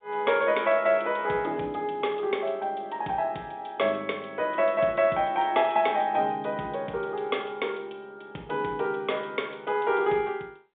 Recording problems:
phone line; 190 Hz to 3.7 kHz, G.711

